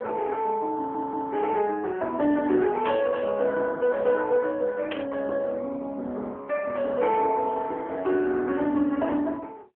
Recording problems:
telephone audio; 260 Hz to 3.4 kHz, AMR-NB
stutter; at 1 s
burst of static; at 3 s and at 5 s; peak -6 dB vs average level

